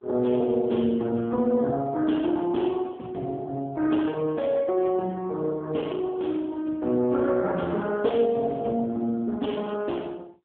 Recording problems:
phone line; 150 Hz to 3.4 kHz, AMR-NB

